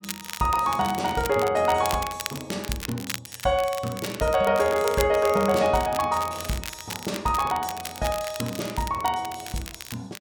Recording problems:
crackle; vinyl, SNR 11 dB

